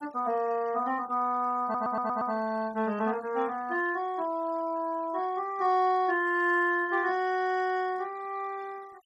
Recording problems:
noise reduction artefacts; signal-to-artefact ratio 25 dB
stutter; at 1.5 s

